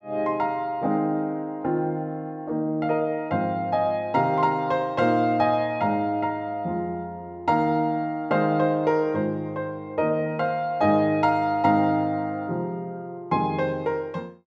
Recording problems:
none

